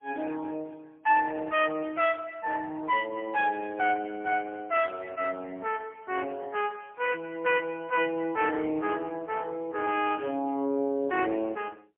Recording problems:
phone line; 240 Hz to 3.3 kHz, AMR-NB, then MP3

